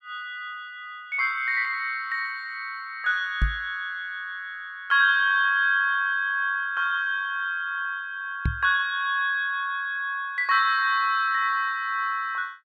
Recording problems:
knock on the microphone; at 3.5 s and at 8.5 s; peak +4 dB vs average level

